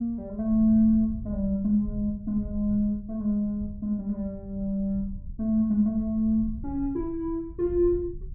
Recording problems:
rumble; below 94 Hz, SNR 14 dB

